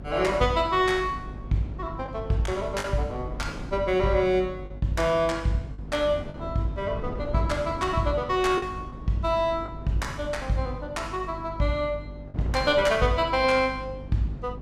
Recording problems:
hum; 50 Hz, harmonics up to 300 Hz, SNR 15 dB
wind noise; below 300 Hz, SNR 15 dB
lost packets; 2% of the sound replaced, filled with the last packet

